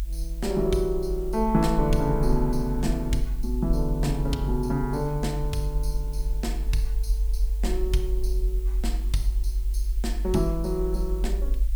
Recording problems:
background hiss; SNR 23 dB
low-frequency rumble; below 48 Hz, strongest tone 48 Hz, SNR 2 dB

